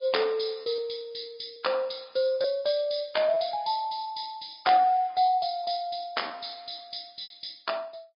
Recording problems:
treble missing; nothing above 5 kHz
lossy compression; Vorbis, log-spectral distance 6 dB
packet loss; 4% of the sound replaced, filled with repeated pitch periods

